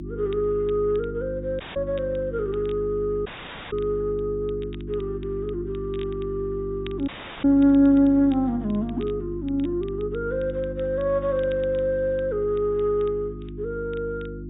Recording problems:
low-pass filter; nothing above 4 kHz
mains hum; 50 Hz, harmonics up to 350 Hz, SNR 10 dB
crackling; vinyl, SNR 28 dB
audio cutting out; at 1.5 s, at 3.5 s and at 7 s

